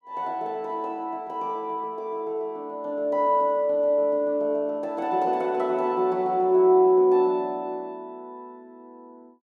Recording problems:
none

